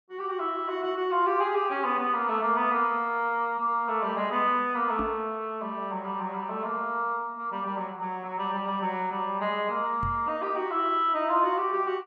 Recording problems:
knock on the microphone; at 5 s and at 10 s; peak -3 dB vs average level

